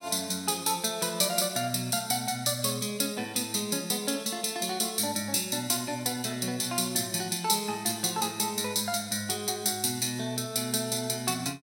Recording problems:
none

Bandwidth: 16.5 kHz